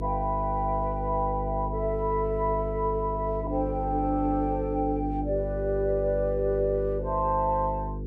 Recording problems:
electrical hum; 50 Hz, harmonics up to 500 Hz, SNR 6 dB

